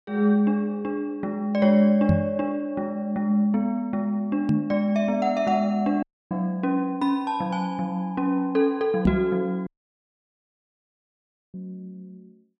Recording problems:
microphone bump; at 2 s, at 4.5 s and at 9 s; peak +6 dB vs average level
dropout; at 6 s and at 9.5 s for 2 s

